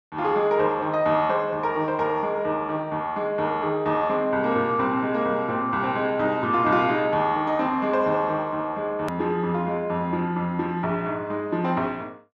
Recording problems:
hard cut with a click; at 9 s

